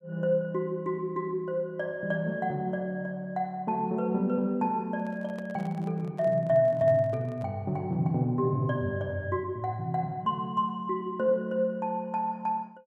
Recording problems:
microphone handling noise; from 5 to 7.5 s; peak -12 dB vs average level

